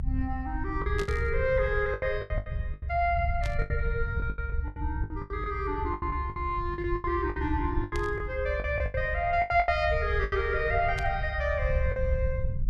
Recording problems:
rumble; below 88 Hz, SNR 4 dB
lost packets; 14% of the sound replaced, filled with the last packet
burst of static; 4 times, first at 1 s; peak -6 dB vs average level

